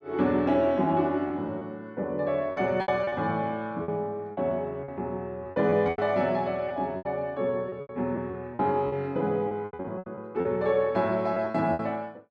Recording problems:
lost packets; 11% of the sound replaced, filled with repeated pitch periods

